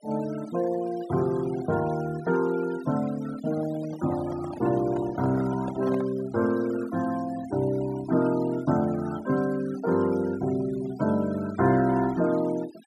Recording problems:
noise reduction artefacts; signal-to-artefact ratio 18 dB
microphone handling noise; from 3.5 to 6 s; peak -6 dB vs average level

